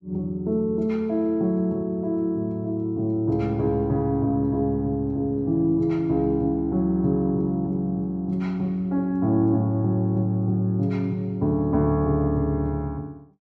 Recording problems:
none

